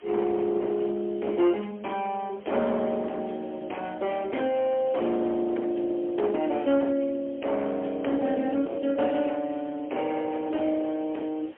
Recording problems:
telephone audio; 240 Hz to 3.2 kHz, AMR-NB, then MP3
distorted audio; hard clipping, signal-to-distortion ratio 11 dB
hiss; SNR 26 dB

